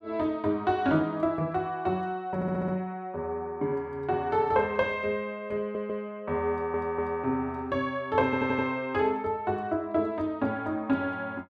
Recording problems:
stutter; 4 times, first at 2.5 s

